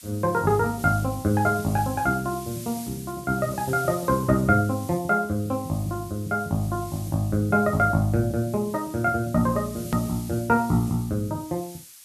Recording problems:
hiss; slope +5 dB per octave, SNR 17 dB
edit click; at 10 s

